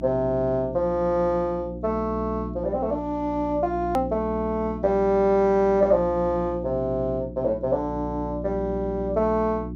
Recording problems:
low-pass filter; nothing above 7.4 kHz
hum; 60 Hz, harmonics up to 360 Hz, SNR 10 dB
hard cut with a click; at 4 s

